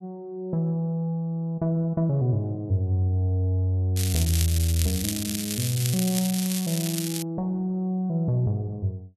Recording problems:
crackling; from 4 to 7 s; loose cable, SNR 4 dB

